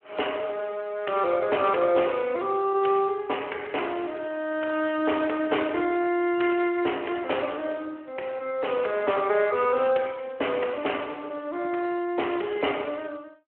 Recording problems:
telephone audio; 280 Hz to 3.1 kHz, Speex

